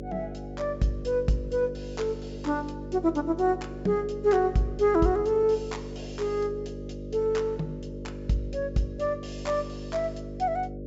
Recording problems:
treble cut off; nothing above 8 kHz
mains hum; 50 Hz, harmonics up to 600 Hz, SNR 10 dB

